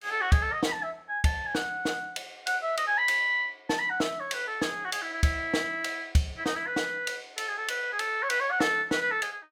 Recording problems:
none

